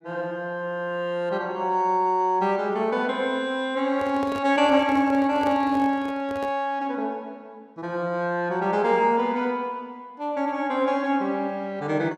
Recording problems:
handling noise; from 4 to 6.5 s; peak -7 dB vs average level

